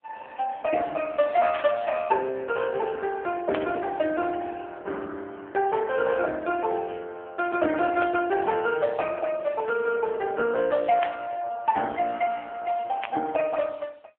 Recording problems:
telephone audio; 300 Hz to 3.4 kHz, AMR-NB
static burst; 5 times, first at 1.5 s; peak +1 dB vs average level

